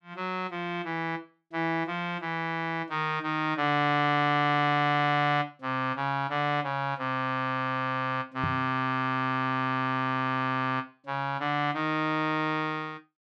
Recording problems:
microphone bump; at 8.5 s; peak 0 dB vs average level

